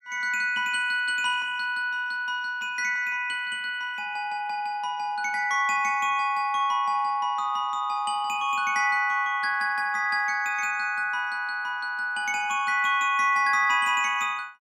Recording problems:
none

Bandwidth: 15.5 kHz